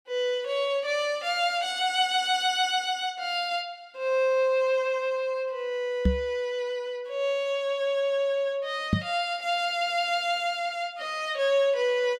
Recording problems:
knock on the microphone; at 6 s and at 9 s; peak +7 dB vs average level

